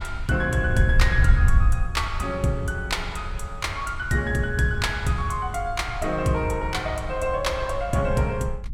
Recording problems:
wind noise; below 80 Hz, SNR 4 dB

